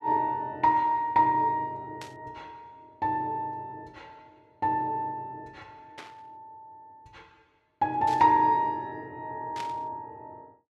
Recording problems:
static burst; 4 times, first at 2 s; peak -9 dB vs average level

